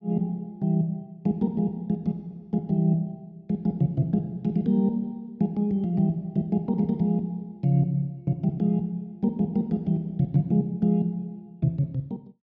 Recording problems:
none

